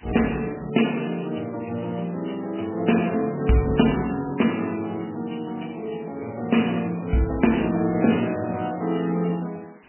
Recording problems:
lossy compression; MP3, log-spectral distance 13 dB, nothing above 2.9 kHz
background hiss; SNR 28 dB

